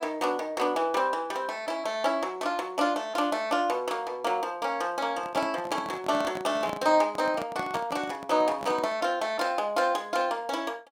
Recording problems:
microphone handling noise; from 5 to 9 s; peak -4 dB vs average level

